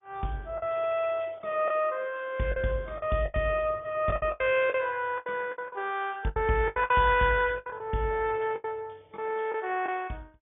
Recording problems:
treble cut off; nothing above 3 kHz
lossy codec; MP2, log-spectral distance 3 dB
lost packets; 11% of the sound replaced, filled with the last packet

